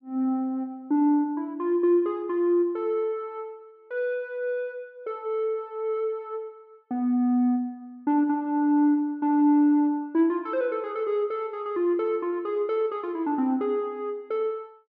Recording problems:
none

